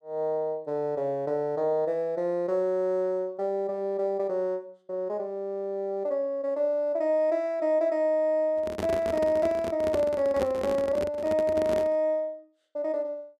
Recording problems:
microphone handling noise; from 8.5 to 12 s; peak -1 dB vs average level

